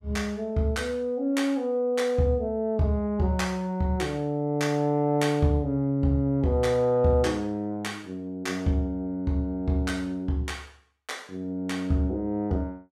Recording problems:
none

